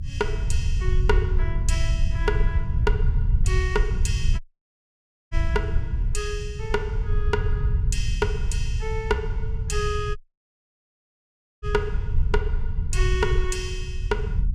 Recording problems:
low-frequency rumble; below 80 Hz, SNR -4 dB
audio cutting out; at 4.5 s for 1 s and at 10 s for 1.5 s

